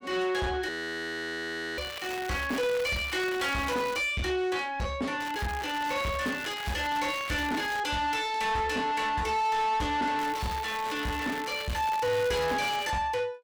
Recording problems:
distorted audio; soft clipping, signal-to-distortion ratio 7 dB
audio freezing; at 0.5 s for 1 s
crackle; from 2 to 4 s, from 5 to 8 s and from 10 to 13 s; loose cable, SNR 12 dB

